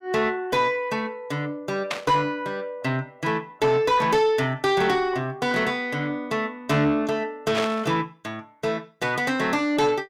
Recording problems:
distortion; soft clipping, signal-to-distortion ratio 11 dB
static burst; at 2 s and at 7.5 s; peak +1 dB vs average level

